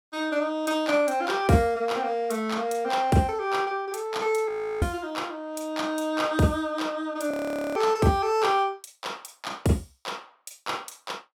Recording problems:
frozen audio; at 4.5 s and at 7.5 s

